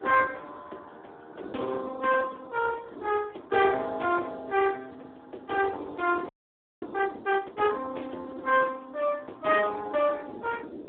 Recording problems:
phone line; 300 Hz to 3.1 kHz, Speex
wind noise; below 440 Hz, SNR 18 dB
audio freezing; at 6.5 s for 0.5 s

